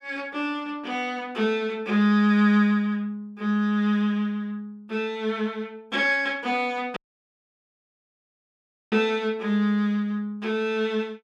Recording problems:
audio cutting out; at 7 s for 2 s

